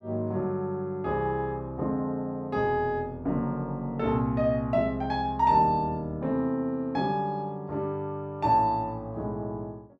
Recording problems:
none

